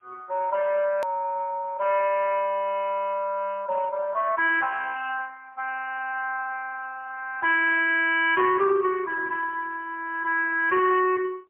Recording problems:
phone line; 340 Hz to 3.3 kHz, AMR-NB, then MP3
distorted audio; hard clipping, uneven, signal-to-distortion ratio 14 dB
edit click; at 1 s

